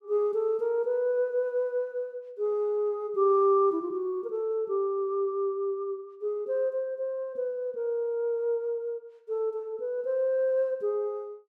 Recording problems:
none

